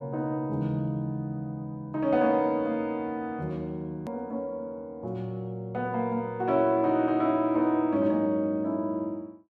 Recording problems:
edit click; at 4 s

